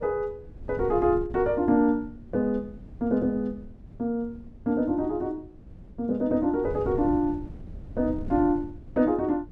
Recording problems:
wind on the microphone; below 160 Hz, SNR 16 dB

